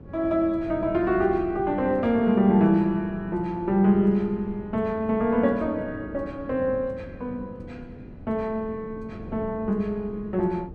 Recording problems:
wind noise; below 300 Hz, SNR 17 dB

